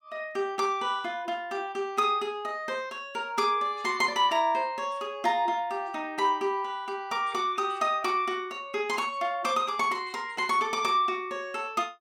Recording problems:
none

